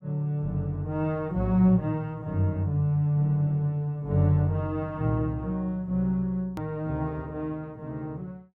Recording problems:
hard cut with a click; at 6.5 s

